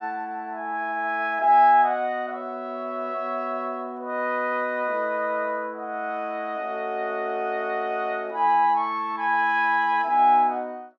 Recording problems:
none

